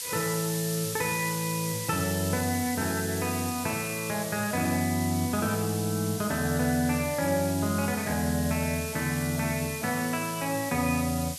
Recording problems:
hiss; SNR 6 dB

